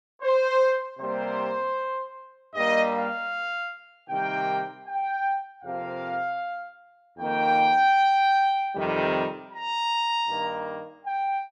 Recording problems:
none

